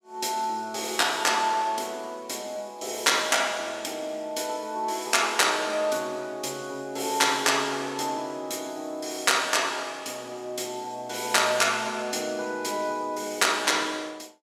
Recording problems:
none

